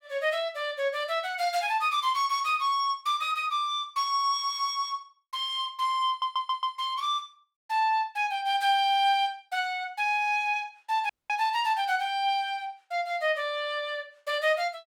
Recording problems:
audio stuttering; at 6 s
dropout; at 11 s

